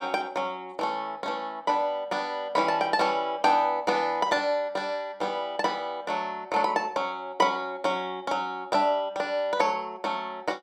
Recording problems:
none

